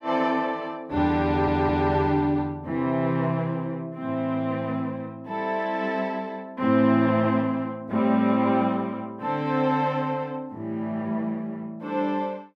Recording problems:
audio stuttering; at 1.5 s

